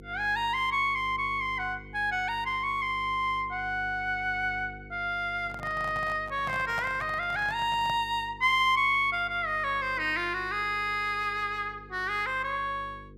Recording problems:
hum; 50 Hz, harmonics up to 500 Hz, SNR 20 dB
microphone handling noise; from 5.5 to 8 s; peak -6 dB vs average level

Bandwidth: 15 kHz